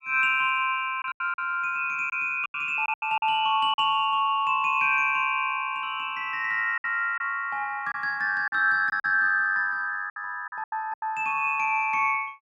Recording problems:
packet loss; 7% of the sound replaced, filled with silence

